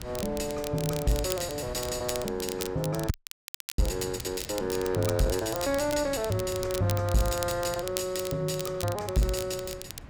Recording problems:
distortion; soft clipping, signal-to-distortion ratio 10 dB
wind noise; below 350 Hz, SNR 15 dB
crackle; vinyl, SNR 10 dB
frozen audio; at 3 s for 0.5 s

